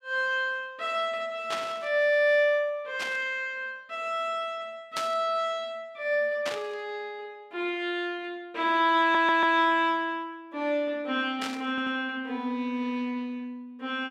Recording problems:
static burst; 5 times, first at 1.5 s; peak -1 dB vs average level
stutter; at 9 s and at 12 s

